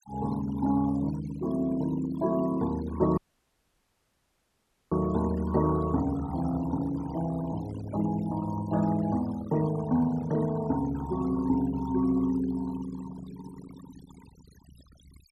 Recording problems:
denoising artefacts; signal-to-artefact ratio 17 dB
audio cutting out; at 3 s for 1.5 s

